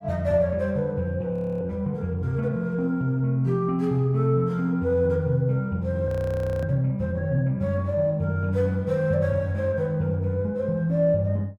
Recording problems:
audio freezing; at 1.5 s and at 6 s for 0.5 s

